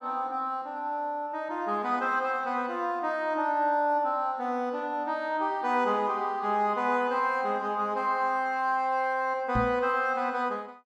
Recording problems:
microphone bump; at 9.5 s; peak +1 dB vs average level

